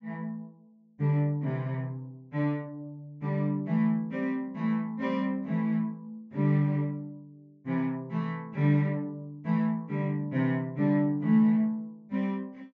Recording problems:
treble cut off; nothing above 8 kHz

